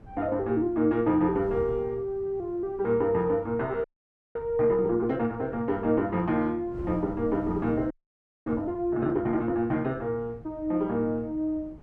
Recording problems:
wind noise; below 250 Hz, SNR 19 dB
audio freezing; at 4 s for 0.5 s and at 8 s for 0.5 s

